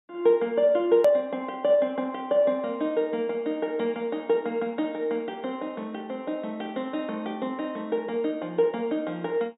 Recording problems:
treble missing; nothing above 4 kHz
click at an edit; at 1 s

